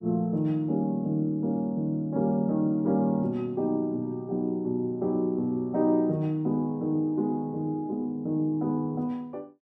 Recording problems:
none

